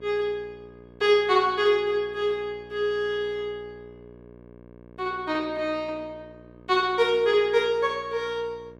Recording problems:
electrical hum; 60 Hz, harmonics up to 1.7 kHz, SNR 24 dB

